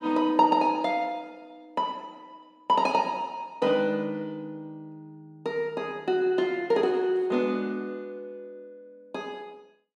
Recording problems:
none

